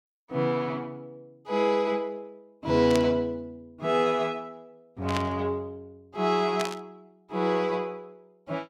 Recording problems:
burst of static; at 3 s, at 5 s and at 6.5 s; peak -1 dB vs average level

